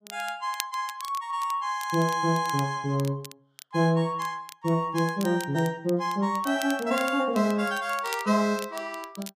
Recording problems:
crackling; vinyl, SNR 16 dB

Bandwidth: 15 kHz